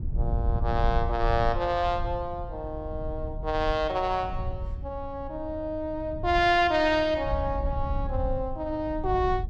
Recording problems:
wind noise; below 86 Hz, SNR 6 dB

